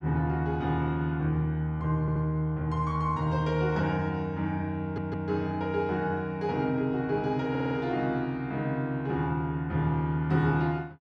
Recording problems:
audio stuttering; at 2 s, at 5 s and at 7.5 s

